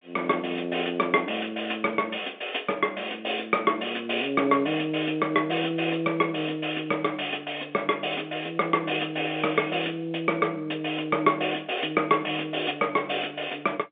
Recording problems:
telephone audio; 190 Hz to 3.5 kHz, G.711

